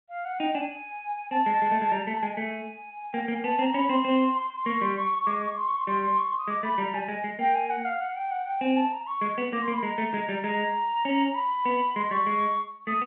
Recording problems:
phone line; 170 Hz to 3.6 kHz, G.711

